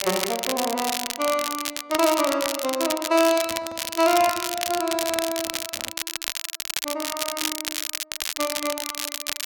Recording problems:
crackle; vinyl, SNR 3 dB
microphone handling noise; from 3.5 to 6 s; peak -11 dB vs average level

